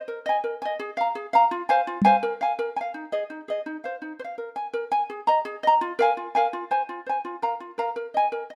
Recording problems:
microphone thump; at 2 s; peak +6 dB vs average level

